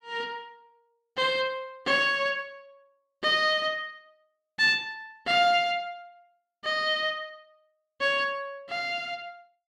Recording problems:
none

